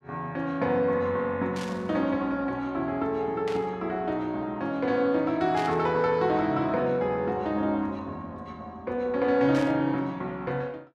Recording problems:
burst of static; 4 times, first at 1.5 s; peak -7 dB vs average level

